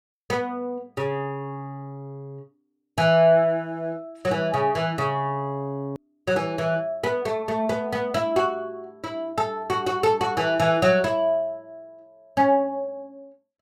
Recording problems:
click at an edit; at 6 s

